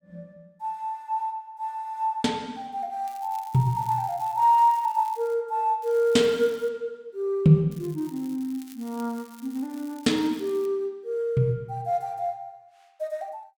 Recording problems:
crackling; from 3 to 5.5 s, at 6 s and from 7.5 to 11 s; loose cable, SNR 25 dB

